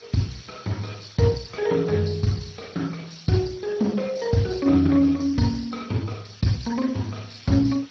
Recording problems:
lossy codec; MP2, then Speex, log-spectral distance 11 dB, nothing above 16.5 kHz
hiss; slope +2 dB per octave, SNR 22 dB

